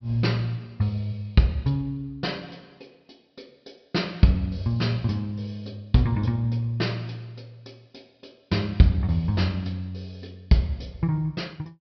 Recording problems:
low-pass filter; nothing above 5.5 kHz

